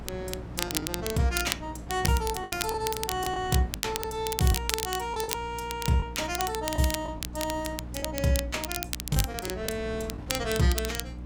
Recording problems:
hum; 60 Hz, harmonics up to 300 Hz, SNR 12 dB
wind noise; below 550 Hz, SNR 16 dB
crackling; vinyl, SNR 5 dB
lost packets; 7% of the sound replaced, filled with the last packet

